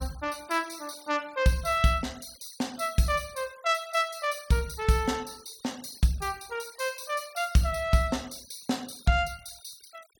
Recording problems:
denoising artefacts; signal-to-artefact ratio 21 dB

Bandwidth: 17.5 kHz